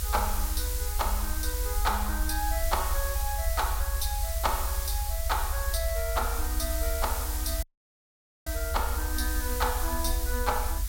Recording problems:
background hiss; slope +2 dB per octave, SNR 2 dB
low-frequency rumble; below 66 Hz, SNR 0 dB
audio cutting out; at 7.5 s for 1 s

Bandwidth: 16.5 kHz